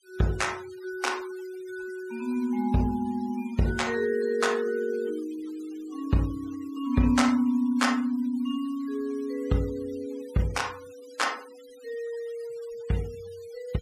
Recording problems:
noise reduction artefacts; signal-to-artefact ratio 21 dB

